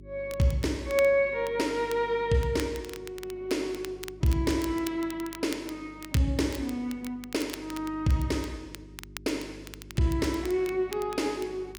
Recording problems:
electrical hum; 50 Hz, harmonics up to 400 Hz, SNR 21 dB
crackling; vinyl, SNR 16 dB

